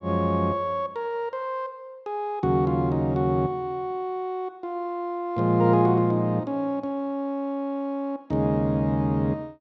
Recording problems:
none

